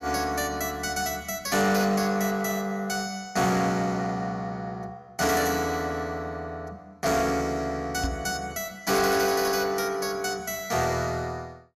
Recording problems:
distorted audio; soft clipping, signal-to-distortion ratio 11 dB
microphone thump; at 8 s; peak 0 dB vs average level

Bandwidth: 13 kHz